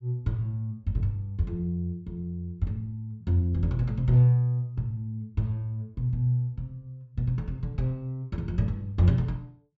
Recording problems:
low-pass filter; nothing above 8 kHz

